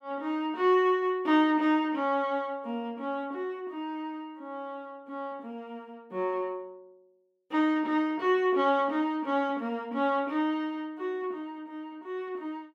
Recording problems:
none

